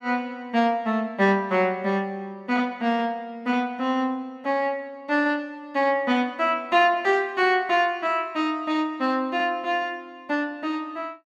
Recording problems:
none

